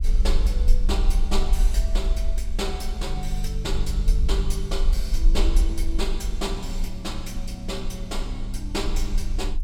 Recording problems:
low-frequency rumble; below 46 Hz, strongest tone 24 Hz, SNR -4 dB

